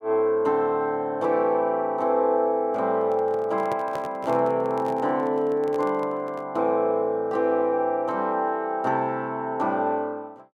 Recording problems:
microphone handling noise; from 3 to 6.5 s; peak -7 dB vs average level

